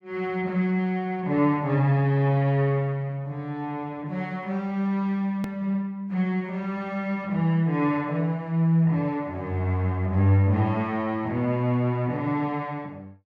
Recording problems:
edit click; at 5.5 s

